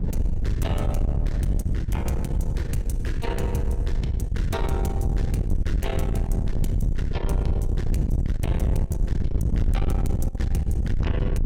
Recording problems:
distortion; soft clipping, signal-to-distortion ratio 12 dB
wind on the microphone; below 100 Hz, SNR -4 dB

